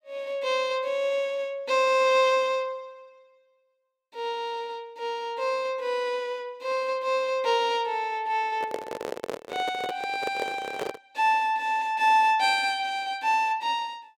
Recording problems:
handling noise; from 8.5 to 11 s; peak -2 dB vs average level

